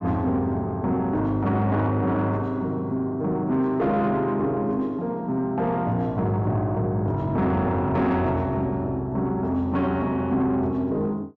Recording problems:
distorted audio; soft clipping, signal-to-distortion ratio 11 dB

